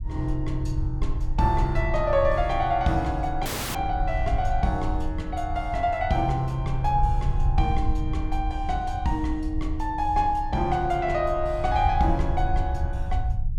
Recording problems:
rumble; below 70 Hz, SNR 4 dB
dropout; at 3.5 s

